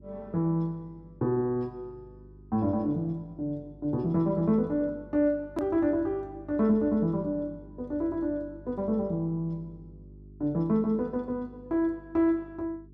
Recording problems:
hum; 50 Hz, harmonics up to 400 Hz, SNR 22 dB
edit click; at 5.5 s

